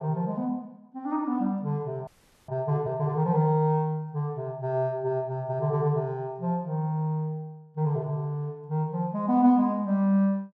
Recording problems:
audio freezing; at 2 s

